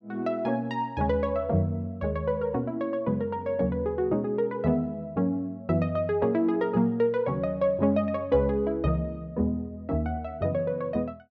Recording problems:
none

